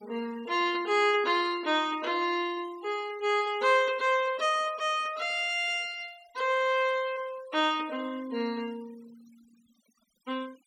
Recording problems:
denoising artefacts; signal-to-artefact ratio 23 dB

